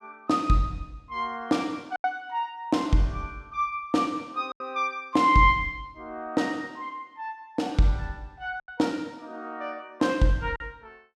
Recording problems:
lost packets; 3% of the sound replaced, filled with silence

